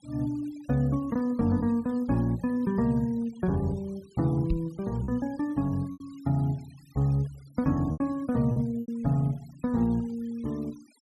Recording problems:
denoising artefacts; signal-to-artefact ratio 27 dB
packet loss; 3% of the sound replaced, filled with repeated pitch periods
knock on the microphone; at 4.5 s; peak +3 dB vs average level

